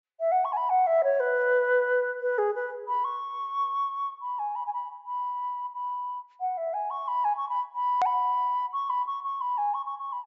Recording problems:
treble missing; nothing above 8 kHz
hard cut with a click; at 8 s

